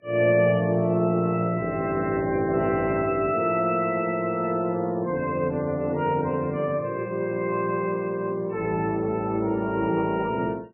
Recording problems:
lossy codec; AAC, then MP3, log-spectral distance 2 dB, nothing above 2.7 kHz

